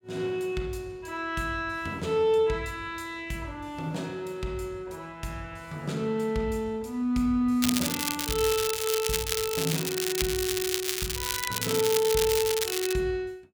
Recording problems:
crackle; from 7.5 to 13 s; loose cable, SNR 0 dB

